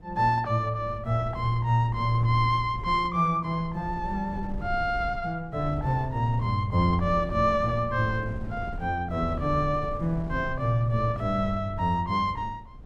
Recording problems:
wind noise; below 130 Hz, SNR 12 dB

